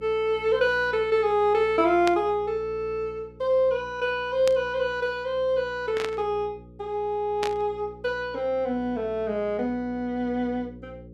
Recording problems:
electrical hum; 60 Hz, harmonics up to 540 Hz, SNR 21 dB
burst of static; 4 times, first at 2 s; peak -2 dB vs average level

